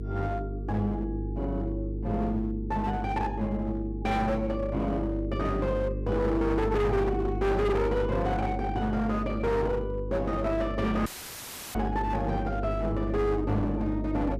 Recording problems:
distortion; hard clipping, uneven, signal-to-distortion ratio 7 dB
hum; 50 Hz, harmonics up to 450 Hz, SNR 5 dB
audio cutting out; at 11 s for 0.5 s; filled with static

